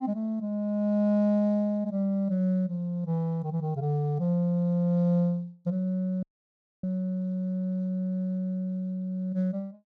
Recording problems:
dropout; at 6 s for 0.5 s

